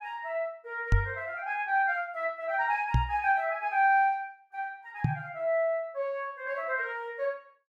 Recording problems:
microphone bump; at 1 s, at 3 s and at 5 s; peak +8 dB vs average level

